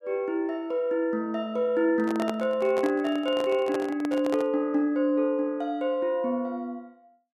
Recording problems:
microphone handling noise; from 2 to 4.5 s; peak -2 dB vs average level

